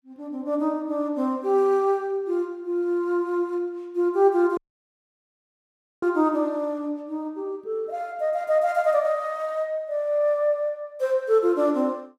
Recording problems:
dropout; at 4.5 s for 1.5 s

